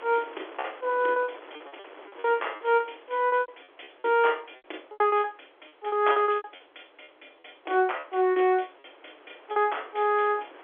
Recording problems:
telephone audio; 280 Hz to 3.5 kHz, G.711
wind on the microphone; below 1.7 kHz, SNR 23 dB
lost packets; 14% of the sound replaced, filled with repeated pitch periods

